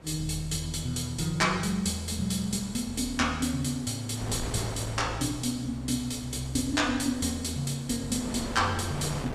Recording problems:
wind noise; below 920 Hz, SNR 13 dB

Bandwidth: 14.5 kHz